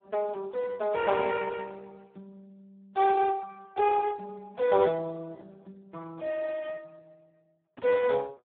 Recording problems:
telephone audio; 240 Hz to 2.3 kHz, Speex

